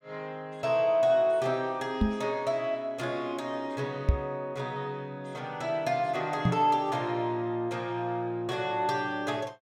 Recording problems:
microphone bump; at 2 s, at 4 s and at 6.5 s; peak +9 dB vs average level

